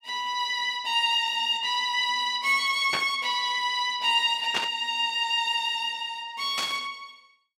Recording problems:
burst of static; at 3 s, at 4.5 s and at 6.5 s; peak 0 dB vs average level

